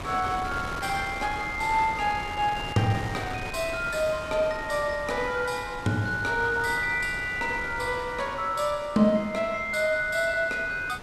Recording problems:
wind noise; below 1.6 kHz, SNR 12 dB

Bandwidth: 14 kHz